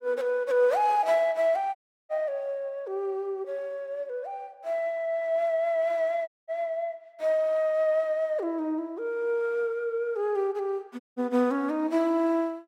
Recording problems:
audio cutting out; at 2 s, at 6.5 s and at 11 s

